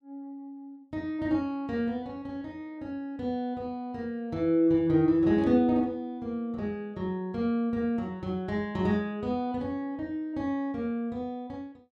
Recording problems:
none

